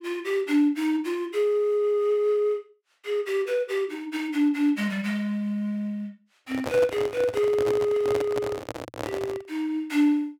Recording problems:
microphone handling noise; from 6.5 to 9.5 s; peak -2 dB vs average level

